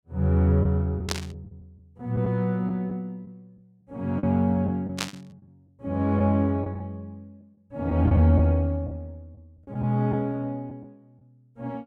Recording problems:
packet loss; 5% of the sound replaced, filled with the last packet
burst of static; at 1 s and at 5 s; peak +2 dB vs average level

